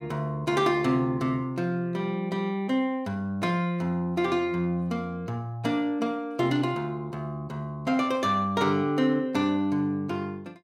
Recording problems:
none

